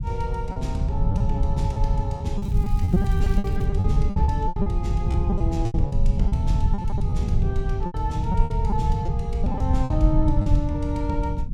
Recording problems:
low-frequency rumble; below 110 Hz, SNR -7 dB
packet loss; 13% of the sound replaced, filled with repeated pitch periods
crackle; from 2.5 to 3.5 s; loose cable, SNR 22 dB

